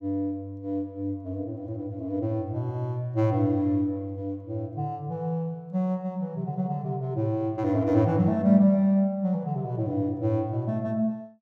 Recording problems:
none

